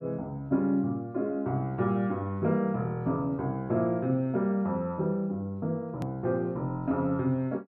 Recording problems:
edit click; at 6 s

